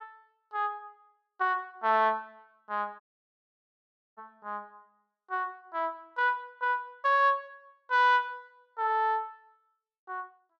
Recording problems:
audio cutting out; at 3 s for 1 s

